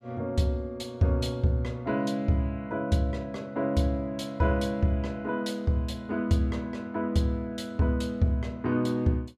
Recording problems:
none

